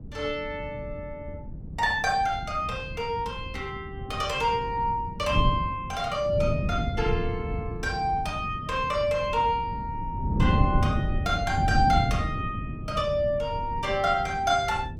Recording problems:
wind on the microphone; below 170 Hz, SNR 5 dB

